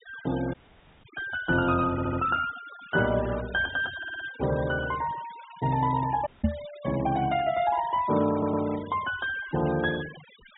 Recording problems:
treble cut off; nothing above 4 kHz
noise reduction artefacts; signal-to-artefact ratio 17 dB
dropout; at 0.5 s for 0.5 s and at 6.5 s
audio stuttering; at 2 s, at 4 s and at 8.5 s
microphone thump; at 6.5 s; peak +7 dB vs average level

